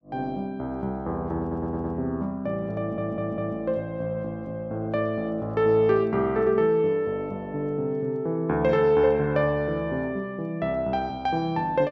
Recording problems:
audio stuttering; at 1.5 s and at 3 s

